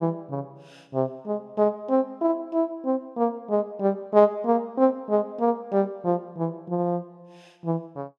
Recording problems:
none

